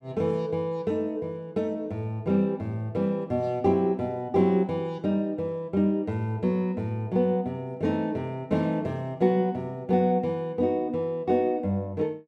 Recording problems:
none

